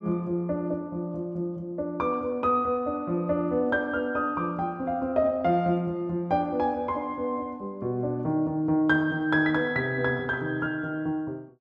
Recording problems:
none

